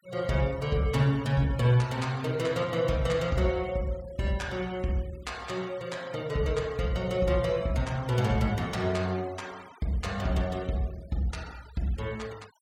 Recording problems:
denoising artefacts; signal-to-artefact ratio 23 dB

